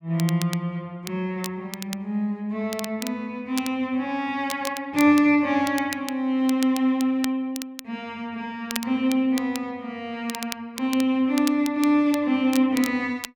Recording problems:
crackling; vinyl, SNR 13 dB

